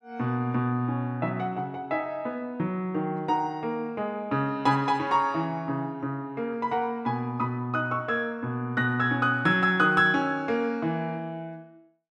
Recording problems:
none

